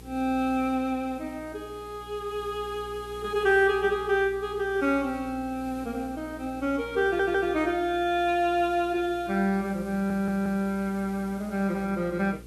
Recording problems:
lossy compression; Vorbis, log-spectral distance 2 dB, nothing above 12.7 kHz
electrical hum; 60 Hz, harmonics up to 480 Hz, SNR 20 dB
background hiss; slope -1 dB per octave, SNR 26 dB
audio stuttering; at 7 s and at 10 s

